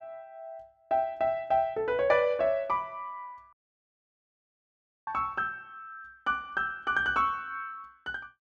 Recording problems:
audio cutting out; at 3.5 s for 1.5 s

